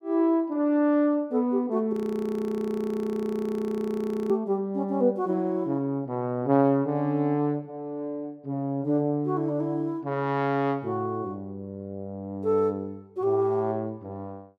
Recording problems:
audio freezing; at 2 s for 2.5 s

